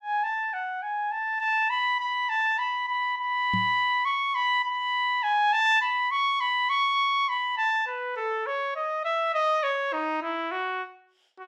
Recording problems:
microphone bump; at 3.5 s; peak -2 dB vs average level

